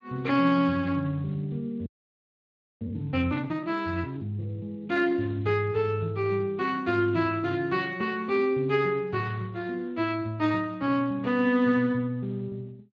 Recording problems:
lossy compression; Speex, log-spectral distance 2 dB
audio freezing; at 2 s for 1 s

